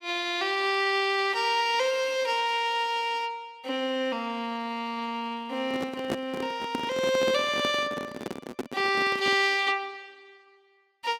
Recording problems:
handling noise; from 5.5 to 9.5 s; peak 0 dB vs average level

